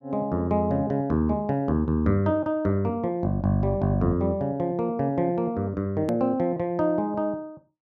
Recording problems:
click at an edit; at 6 s

